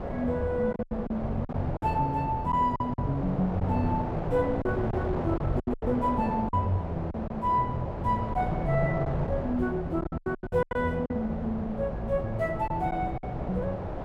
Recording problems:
wind noise; below 680 Hz, SNR 6 dB
packet loss; 8% of the sound replaced, filled with silence

